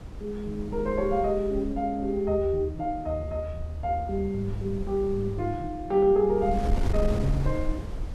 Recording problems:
wind noise; below 86 Hz, SNR 8 dB

